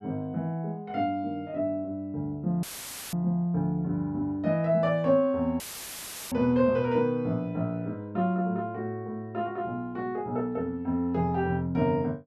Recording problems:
dropout; at 2.5 s for 0.5 s and at 5.5 s for 0.5 s; filled with static

